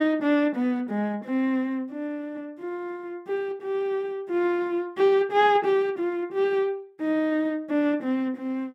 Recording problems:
none

